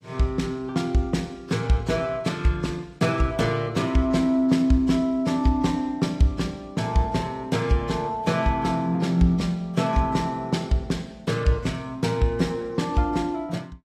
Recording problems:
lossy compression; AAC, log-spectral distance 2 dB

